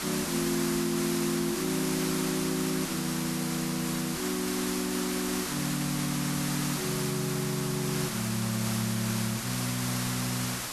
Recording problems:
hiss; slope -1 dB per octave, SNR 1 dB

